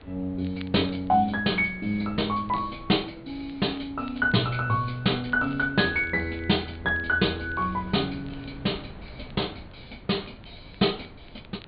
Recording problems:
low-pass filter; nothing above 4.5 kHz
wind noise; below 370 Hz, SNR 19 dB
crackle; vinyl, SNR 29 dB

